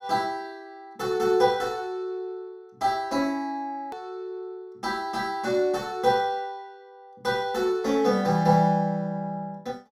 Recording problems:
edit click; at 4 s

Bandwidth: 16 kHz